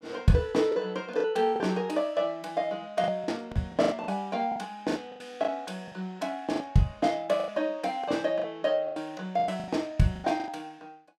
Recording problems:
lost packets; 11% of the sound replaced, filled with the last packet

